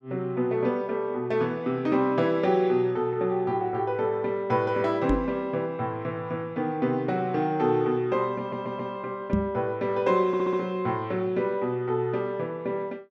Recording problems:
knock on the microphone; at 5 s and at 9.5 s; peak +6 dB vs average level
stutter; at 8.5 s and at 10 s

